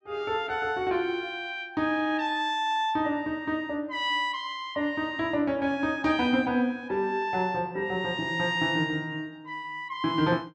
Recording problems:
none

